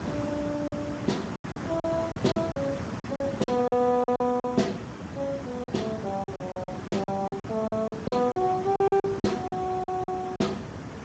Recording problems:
lossy codec; Speex, log-spectral distance 5 dB, nothing above 7.3 kHz
hiss; slope -7 dB per octave, SNR 8 dB
packet loss; 14% of the sound replaced, filled with silence

